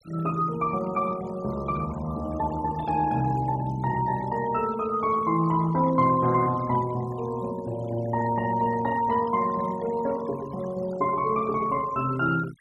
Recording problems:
denoising artefacts; signal-to-artefact ratio 19 dB

